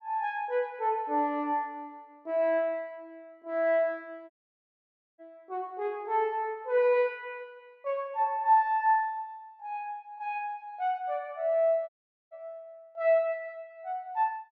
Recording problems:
audio cutting out; at 4.5 s for 1 s and at 12 s

